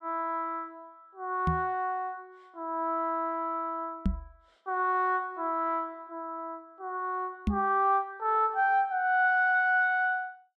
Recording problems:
knock on the microphone; at 1.5 s, at 4 s and at 7.5 s; peak +4 dB vs average level

